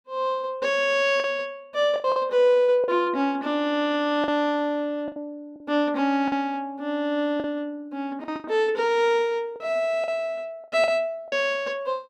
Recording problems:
lost packets; 6% of the sound replaced, filled with the last packet

